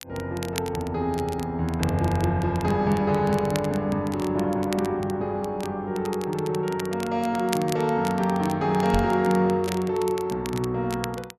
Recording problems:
crackling; vinyl, SNR 15 dB
microphone bump; at 9 s; peak +1 dB vs average level

